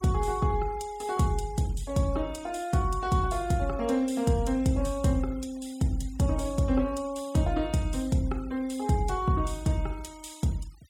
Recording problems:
noise reduction artefacts; signal-to-artefact ratio 24 dB

